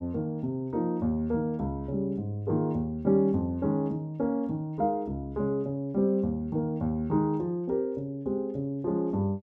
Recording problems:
none

